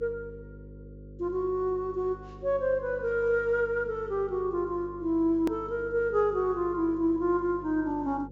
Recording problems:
treble missing; nothing above 7.4 kHz
hum; 50 Hz, harmonics up to 550 Hz, SNR 18 dB
hard cut with a click; at 5.5 s

